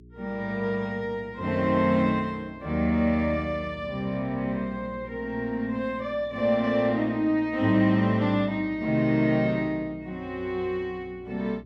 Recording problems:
electrical hum; 60 Hz, harmonics up to 420 Hz, SNR 23 dB

